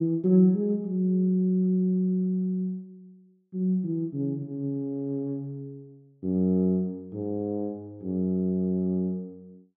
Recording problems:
none

